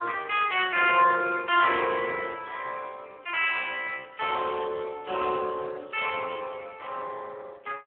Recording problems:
telephone audio; 280 Hz to 3.5 kHz, Speex

